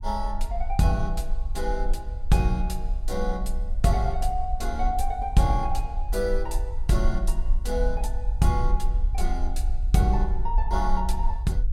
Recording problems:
rumble; below 44 Hz, strongest tone 20 Hz, SNR 2 dB

